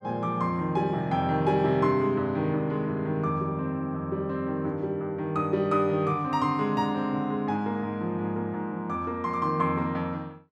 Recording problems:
none

